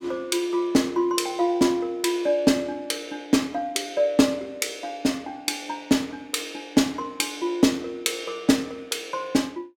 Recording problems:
none

